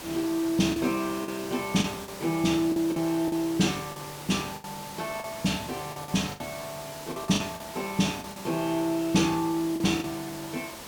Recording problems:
hiss; slope -3 dB per octave, SNR 12 dB
packet loss; 9% of the sound replaced, filled with the last packet

